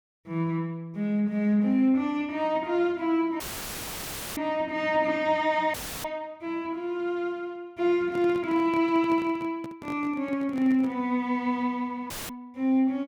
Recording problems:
audio cutting out; at 3.5 s for 1 s, at 5.5 s and at 12 s; filled with static
handling noise; from 8 to 11 s; peak -9 dB vs average level

